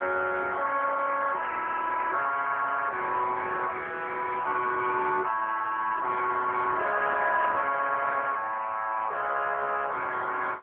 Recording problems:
telephone audio; 320 Hz to 3.3 kHz, AMR-NB

